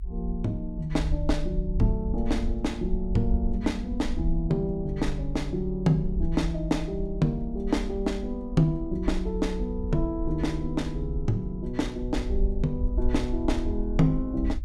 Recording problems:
low-frequency rumble; below 56 Hz, SNR 5 dB

